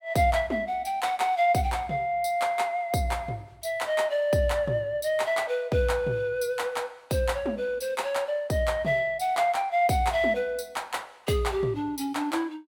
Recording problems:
none

